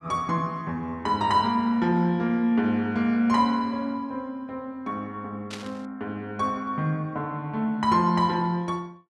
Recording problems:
burst of static; at 5.5 s; peak -6 dB vs average level

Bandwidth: 12 kHz